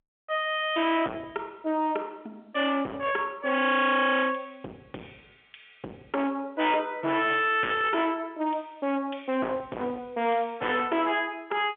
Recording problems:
telephone audio; 260 Hz to 3.5 kHz, G.711
distorted audio; hard clipping, uneven, signal-to-distortion ratio 6 dB

